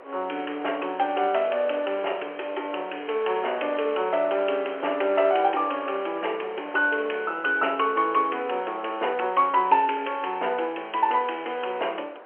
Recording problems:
telephone audio; 340 Hz to 3.1 kHz, G.711
wind on the microphone; below 1.2 kHz, SNR 17 dB

